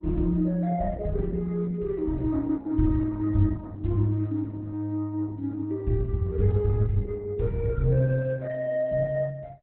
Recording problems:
codec artefacts; Opus, log-spectral distance 2 dB, nothing above 4 kHz

